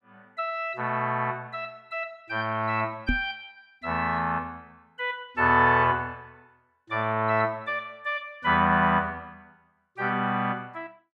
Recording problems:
knock on the microphone; at 3 s; peak +3 dB vs average level

